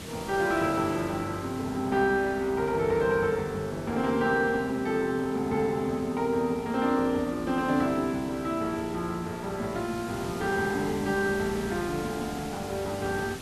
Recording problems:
hiss; SNR 14 dB

